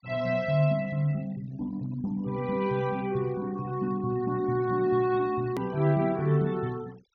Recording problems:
low-pass filter; nothing above 6.3 kHz
noise reduction artefacts; signal-to-artefact ratio 23 dB
click at an edit; at 5.5 s

